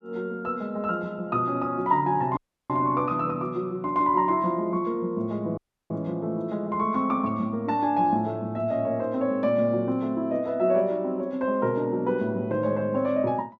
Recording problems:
audio cutting out; at 2.5 s and at 5.5 s

